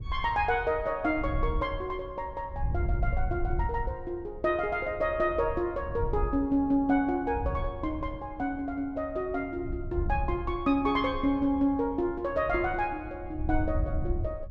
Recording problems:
wind on the microphone; below 86 Hz, SNR 7 dB

